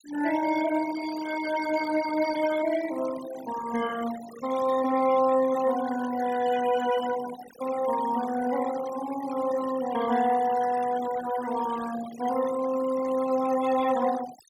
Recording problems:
noise reduction artefacts; signal-to-artefact ratio 13 dB

